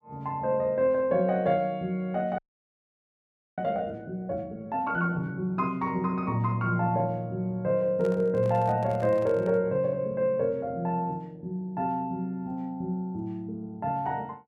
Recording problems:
audio freezing; at 2.5 s for 1 s
microphone handling noise; from 8 to 9.5 s; peak -8 dB vs average level

